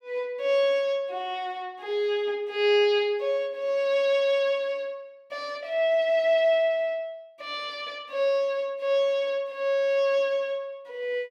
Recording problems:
none

